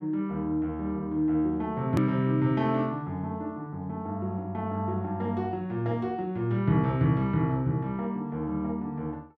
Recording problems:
edit click; at 2 s

